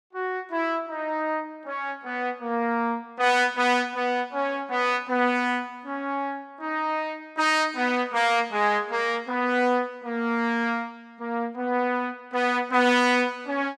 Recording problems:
none

